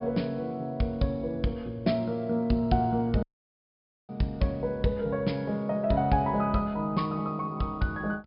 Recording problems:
treble cut off; nothing above 5.5 kHz
dropout; at 3 s for 1 s

